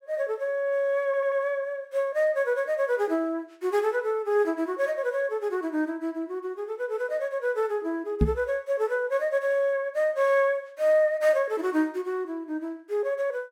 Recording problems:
stutter; at 1 s
microphone bump; at 8 s; peak +7 dB vs average level

